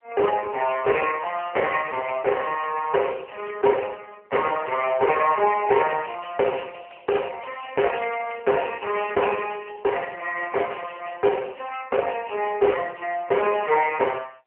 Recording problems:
phone line; 320 Hz to 3 kHz, AMR-NB

